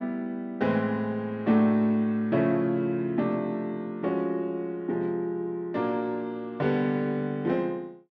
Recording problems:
none

